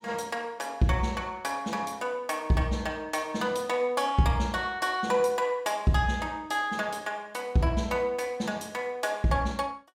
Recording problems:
none

